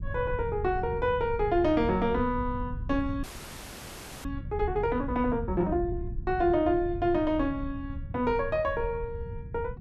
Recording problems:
low-frequency rumble; below 110 Hz, SNR 9 dB
frozen audio; at 3 s for 1 s

